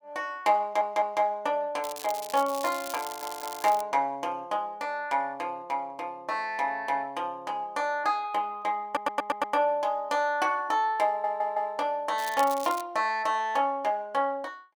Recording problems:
stutter; 4 times, first at 0.5 s
crackle; from 2 to 4 s and at 12 s; loose cable, SNR 12 dB

